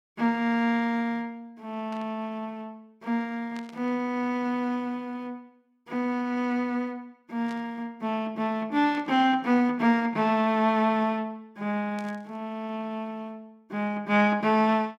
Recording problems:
burst of static; 5 times, first at 2 s; peak -15 dB vs average level

